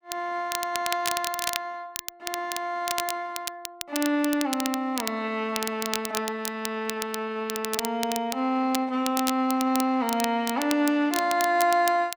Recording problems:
crackling; vinyl, SNR 7 dB

